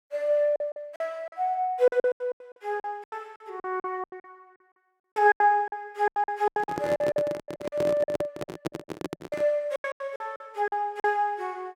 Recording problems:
packet loss; 19% of the sound replaced, filled with silence
microphone handling noise; from 6.5 to 9.5 s; peak +1 dB vs average level

